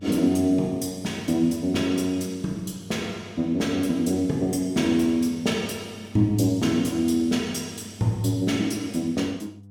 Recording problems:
mains hum; 50 Hz, harmonics up to 500 Hz, SNR 22 dB

